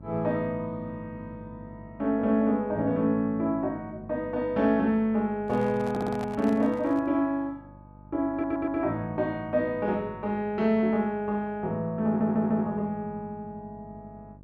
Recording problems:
electrical hum; 50 Hz, harmonics up to 650 Hz, SNR 21 dB
microphone handling noise; from 5.5 to 7 s; peak -8 dB vs average level
audio stuttering; at 6 s, at 8.5 s and at 12 s

